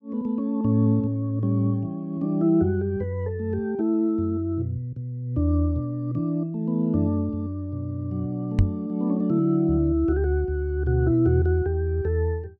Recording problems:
microphone bump; at 8.5 s; peak +8 dB vs average level

